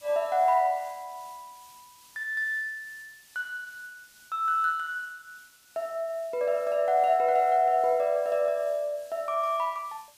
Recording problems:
hiss; slope +2 dB per octave, SNR 27 dB

